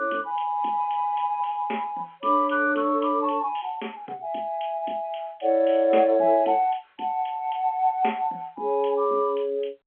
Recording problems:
phone line; 240 Hz to 3.6 kHz, G.711

